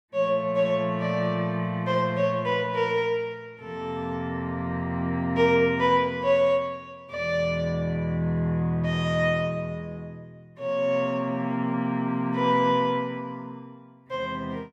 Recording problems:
none

